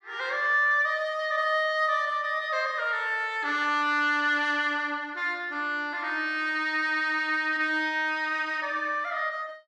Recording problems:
none

